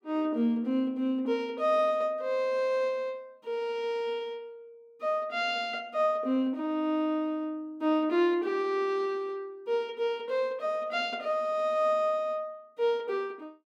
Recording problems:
none

